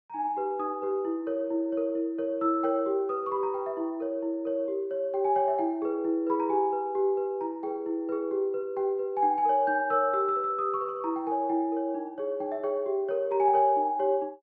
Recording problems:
none

